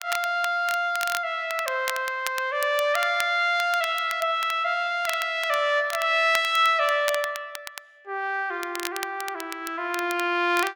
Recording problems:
crackle; vinyl, SNR 12 dB

